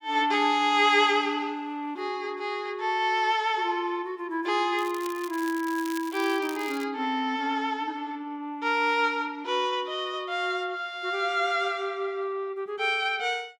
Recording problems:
crackling; from 5 to 7 s; loose cable, SNR 17 dB

